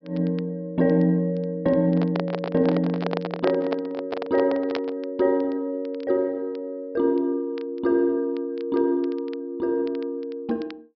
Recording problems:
low-pass filter; nothing above 5.5 kHz
crackle; vinyl, SNR 27 dB
microphone handling noise; from 2 to 5 s; peak +1 dB vs average level

